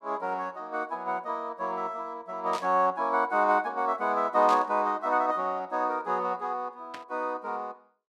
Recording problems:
burst of static; at 2.5 s, at 4.5 s and at 7 s; peak -7 dB vs average level

